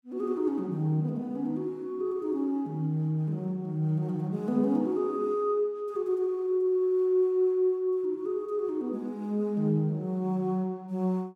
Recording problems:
none

